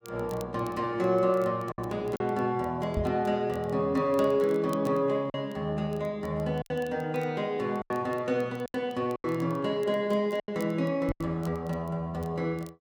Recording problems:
crackle; vinyl, SNR 27 dB
lost packets; 5% of the sound replaced, filled with silence
microphone bump; at 3 s and at 11 s; peak +1 dB vs average level

